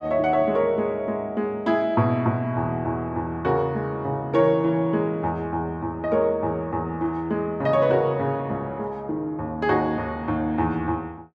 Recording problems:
none

